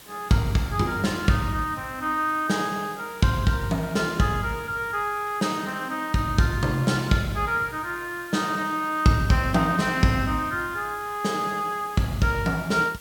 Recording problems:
background hiss; slope -1 dB per octave, SNR 20 dB

